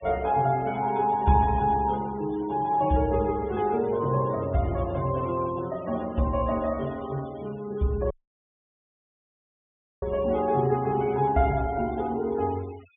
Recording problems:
low-pass filter; nothing above 3.6 kHz
noise reduction artefacts; signal-to-artefact ratio 23 dB
audio cutting out; at 8 s for 2 s

